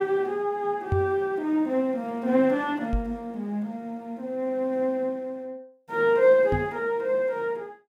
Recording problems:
microphone thump; at 1 s, at 3 s and at 6.5 s; peak +3 dB vs average level

